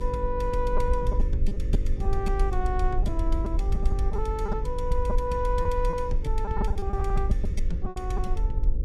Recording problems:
electrical hum; 50 Hz, harmonics up to 600 Hz, SNR 9 dB
low-frequency rumble; below 56 Hz, SNR -2 dB
lost packets; 9% of the sound replaced, filled with repeated pitch periods

